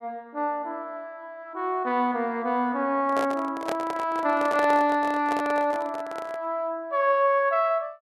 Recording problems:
handling noise; from 3 to 6.5 s; peak 0 dB vs average level

